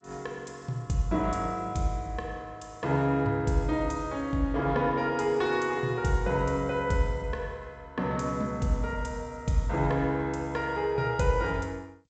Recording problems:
lossy compression; G.722, log-spectral distance 2 dB, nothing above 7.8 kHz

